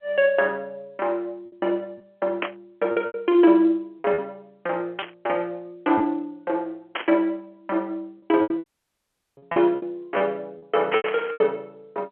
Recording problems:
telephone audio; 260 Hz to 3.3 kHz, G.711
packet loss; 8% of the sound replaced, filled with repeated pitch periods
static burst; 4 times, first at 2.5 s; peak +2 dB vs average level
dropout; at 8.5 s for 0.5 s

